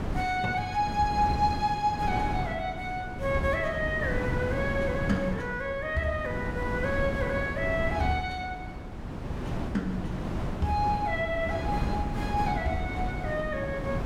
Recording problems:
wind noise; below 350 Hz, SNR 4 dB

